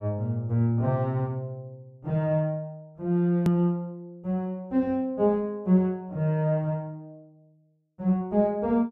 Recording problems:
click at an edit; at 3.5 s

